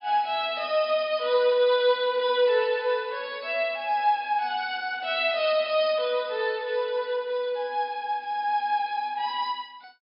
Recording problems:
treble cut off; nothing above 5.5 kHz

